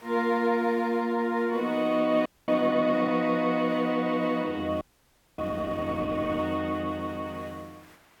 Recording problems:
hiss; SNR 27 dB
frozen audio; at 2.5 s and at 5 s for 0.5 s

